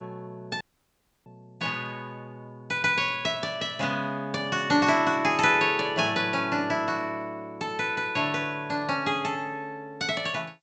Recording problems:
codec artefacts; G.722, log-spectral distance 2 dB, nothing above 7.3 kHz
audio cutting out; at 0.5 s for 0.5 s

